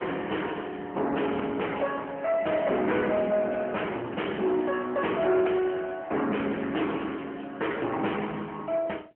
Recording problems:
telephone audio; 220 Hz to 3 kHz, AMR-NB
distortion; soft clipping, signal-to-distortion ratio 7 dB

